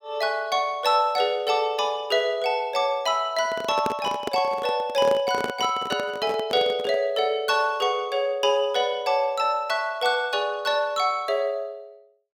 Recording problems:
handling noise; from 3.5 to 7 s; peak -1 dB vs average level

